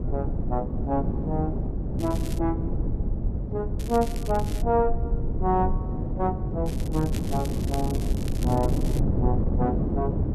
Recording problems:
low-frequency rumble; below 68 Hz, SNR 5 dB
wind on the microphone; below 260 Hz, SNR 0 dB
crackle; at 2 s, at 4 s and from 6.5 to 9 s; loose cable, SNR 14 dB

